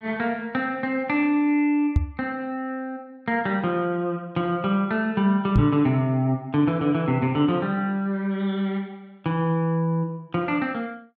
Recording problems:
knock on the microphone; at 2 s and at 5.5 s; peak +7 dB vs average level

